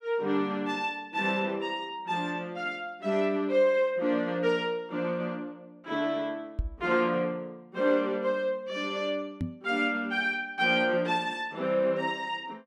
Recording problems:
microphone bump; at 6.5 s and at 9.5 s; peak +1 dB vs average level

